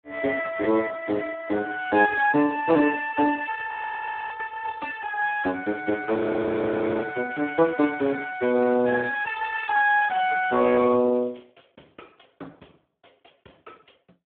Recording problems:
telephone audio; 280 Hz to 2.5 kHz, Speex
frozen audio; at 3.5 s for 0.5 s and at 6 s for 1 s

